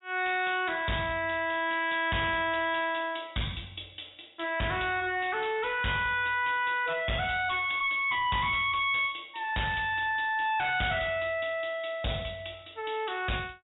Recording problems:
treble missing; nothing above 4 kHz
distorted audio; hard clipping, signal-to-distortion ratio 6 dB

